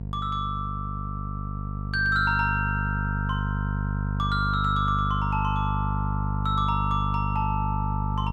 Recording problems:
electrical hum; 50 Hz, harmonics up to 500 Hz, SNR 2 dB

